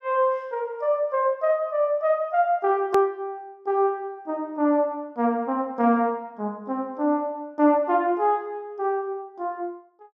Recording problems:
hard cut with a click; at 3 s

